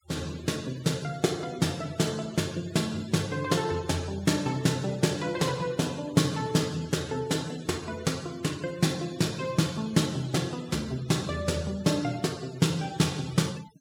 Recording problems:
noise reduction artefacts; signal-to-artefact ratio 19 dB

